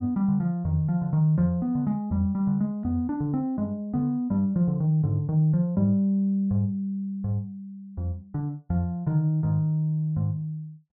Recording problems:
none

